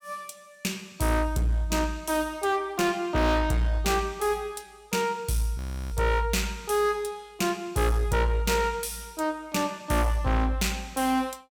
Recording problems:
distorted audio; hard clipping, uneven, signal-to-distortion ratio 8 dB
audio freezing; at 5.5 s

